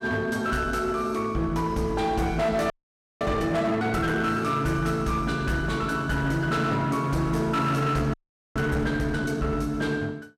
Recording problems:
distortion; hard clipping, signal-to-distortion ratio 11 dB
frozen audio; at 2.5 s for 0.5 s and at 8 s

